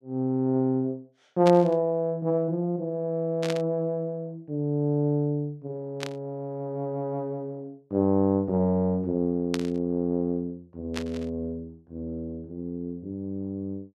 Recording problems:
static burst; 5 times, first at 1.5 s; peak -1 dB vs average level

